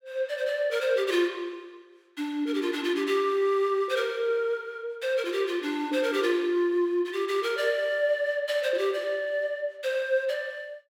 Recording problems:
none

